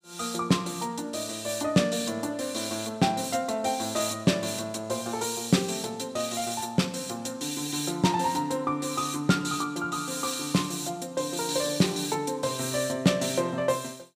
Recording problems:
none

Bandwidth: 15 kHz